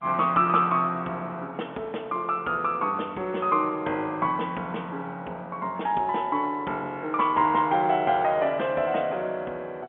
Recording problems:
telephone audio; 240 Hz to 3.4 kHz, G.711

